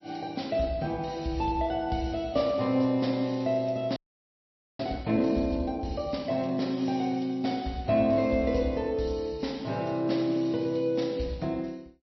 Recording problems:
codec artefacts; MP3, log-spectral distance 3 dB, nothing above 5.7 kHz
audio freezing; at 4 s for 1 s

